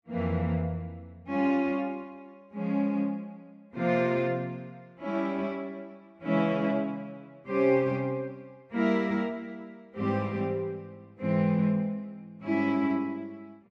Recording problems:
none

